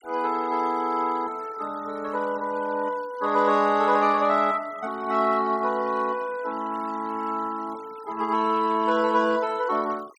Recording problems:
denoising artefacts; signal-to-artefact ratio 23 dB

